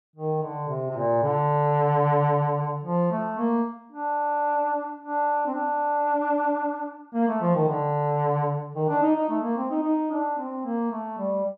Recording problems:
none

